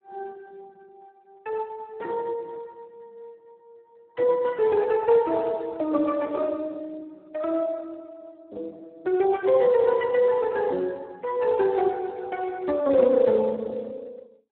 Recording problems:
phone line; 220 Hz to 3.9 kHz, Speex

